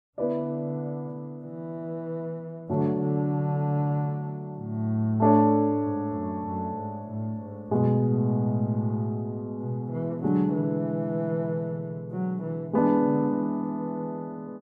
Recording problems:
none

